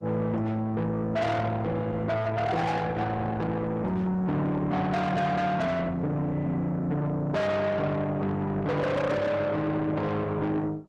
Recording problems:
lossy codec; Opus, log-spectral distance 2 dB, nothing above 12 kHz
distorted audio; soft clipping, signal-to-distortion ratio 7 dB

